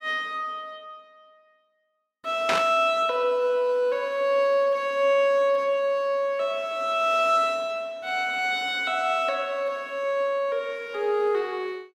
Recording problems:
static burst; at 2.5 s; peak +3 dB vs average level

